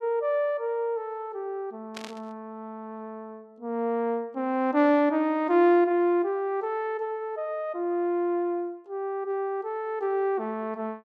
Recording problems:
burst of static; at 2 s; peak -8 dB vs average level

